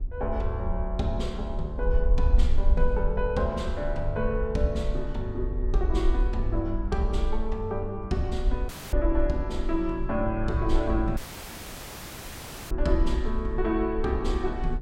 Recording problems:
low-frequency rumble; below 52 Hz, SNR 2 dB
wind on the microphone; below 230 Hz, SNR 17 dB
dropout; at 8.5 s and at 11 s for 1.5 s

